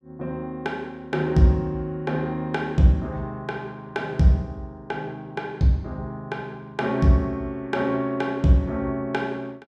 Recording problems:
none

